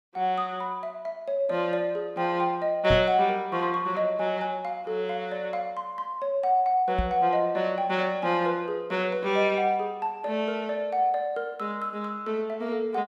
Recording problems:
knock on the microphone; at 3 s and at 7 s; peak +2 dB vs average level

